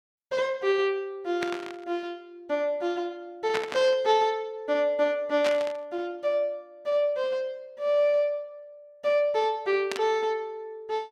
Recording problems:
burst of static; 4 times, first at 1.5 s; peak 0 dB vs average level

